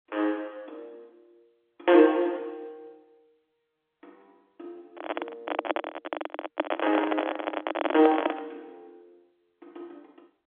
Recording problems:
phone line; 260 Hz to 3.5 kHz, G.711
handling noise; from 5 to 8.5 s; peak +3 dB vs average level

